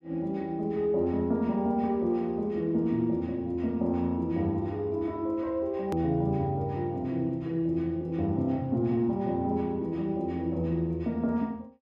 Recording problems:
click at an edit; at 6 s

